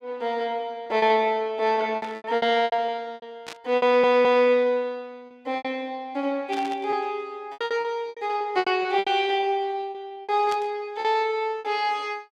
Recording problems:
lost packets; 12% of the sound replaced, filled with repeated pitch periods
static burst; 4 times, first at 2 s; peak -8 dB vs average level
audio stuttering; at 4 s

